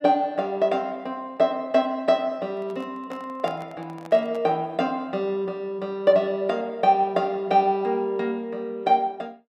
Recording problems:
handling noise; from 2.5 to 4.5 s; peak -9 dB vs average level

